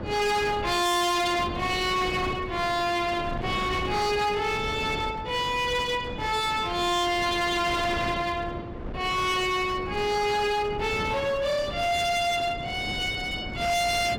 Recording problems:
distortion; hard clipping, uneven, signal-to-distortion ratio 7 dB
wind noise; below 560 Hz, SNR 11 dB

